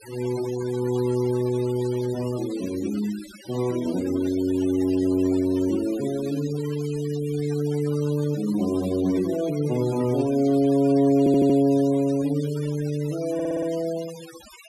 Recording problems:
noise reduction artefacts; signal-to-artefact ratio 18 dB
stutter; at 11 s and at 13 s

